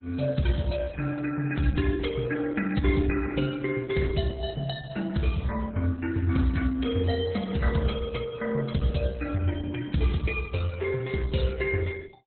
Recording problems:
lossy codec; MP3, then Opus, log-spectral distance 4 dB, nothing above 4 kHz

